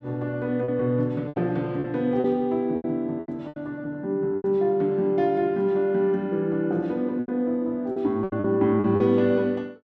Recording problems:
packet loss; 9% of the sound replaced, filled with repeated pitch periods

